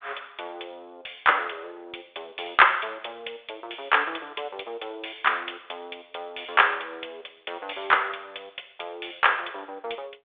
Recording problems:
phone line; 340 Hz to 3.6 kHz, G.726

